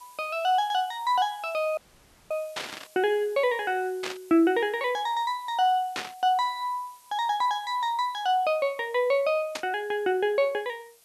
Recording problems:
hiss; slope +1 dB per octave, SNR 27 dB
audio cutting out; at 2 s for 0.5 s
static burst; 4 times, first at 2.5 s; peak -1 dB vs average level

